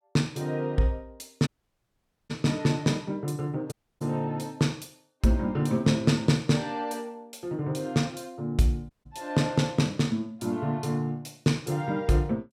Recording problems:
audio cutting out; at 1.5 s for 1 s, at 3.5 s and at 9 s

